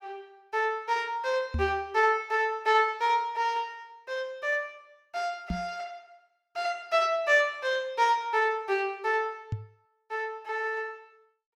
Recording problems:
microphone thump; at 1.5 s, at 5.5 s and at 9.5 s; peak 0 dB vs average level

